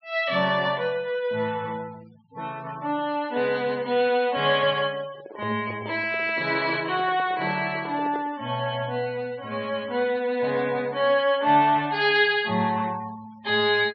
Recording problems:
treble cut off; nothing above 5.5 kHz
denoising artefacts; signal-to-artefact ratio 24 dB
handling noise; from 5 to 8.5 s; peak -7 dB vs average level

